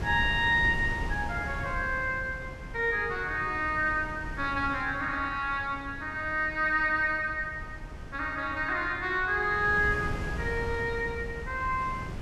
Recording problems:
wind noise; below 260 Hz, SNR 11 dB

